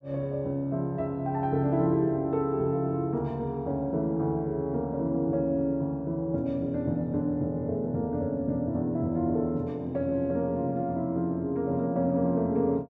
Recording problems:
none

